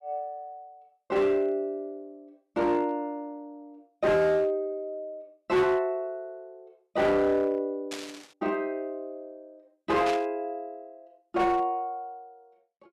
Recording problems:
distorted audio; hard clipping, signal-to-distortion ratio 11 dB
static burst; at 8 s and at 10 s; peak -3 dB vs average level

